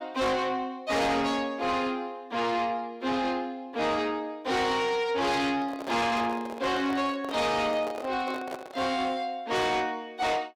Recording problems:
distorted audio; soft clipping, signal-to-distortion ratio 8 dB
handling noise; from 5.5 to 9 s; peak -5 dB vs average level

